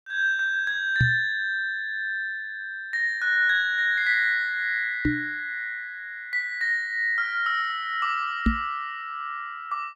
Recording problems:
microphone bump; at 1 s, at 5 s and at 8.5 s; peak +6 dB vs average level

